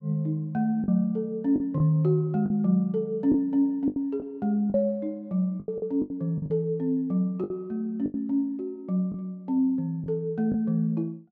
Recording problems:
lost packets; 7% of the sound replaced, filled with the last packet

